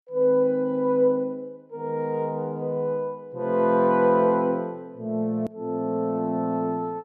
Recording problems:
hard cut with a click; at 5.5 s

